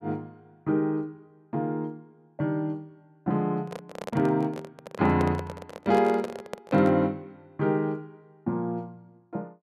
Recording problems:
handling noise; from 3.5 to 7 s; peak -2 dB vs average level

